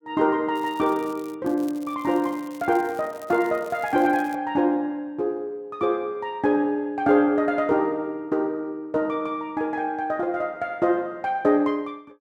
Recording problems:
crackle; at 0.5 s and from 1.5 to 4.5 s; loose cable, SNR 25 dB

